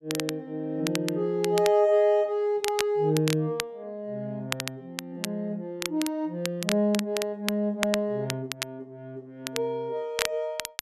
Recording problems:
crackle; vinyl, SNR 7 dB

